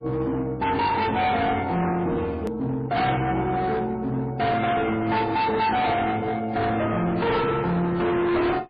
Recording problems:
lossy compression; AAC, then MP3, log-spectral distance 2 dB, nothing above 4.5 kHz
distortion; hard clipping, signal-to-distortion ratio 7 dB
hard cut with a click; at 2.5 s

